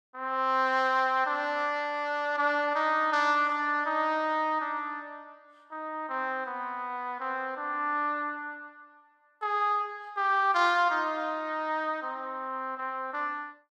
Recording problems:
none

